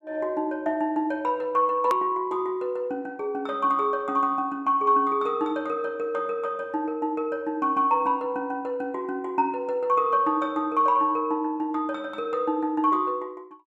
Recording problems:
click at an edit; at 2 s

